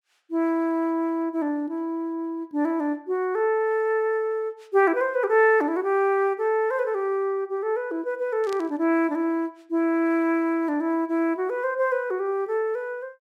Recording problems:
burst of static; at 8.5 s; peak -11 dB vs average level

